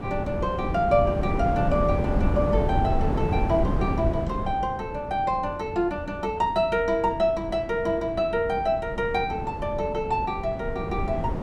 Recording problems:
wind noise; below 280 Hz, SNR 4 dB

